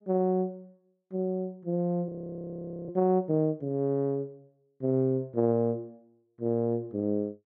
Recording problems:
frozen audio; at 2 s for 1 s

